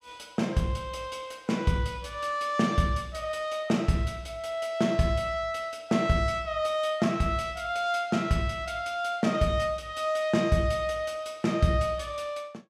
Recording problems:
none

